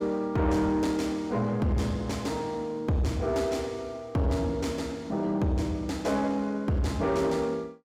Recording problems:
distortion; soft clipping, signal-to-distortion ratio 10 dB

